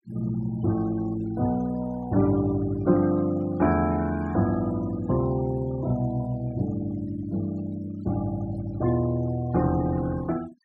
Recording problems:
noise reduction artefacts; signal-to-artefact ratio 20 dB

